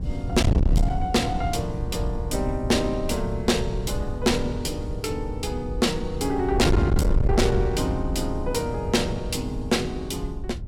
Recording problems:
distorted audio; soft clipping, signal-to-distortion ratio 6 dB
wind on the microphone; below 120 Hz, SNR 3 dB

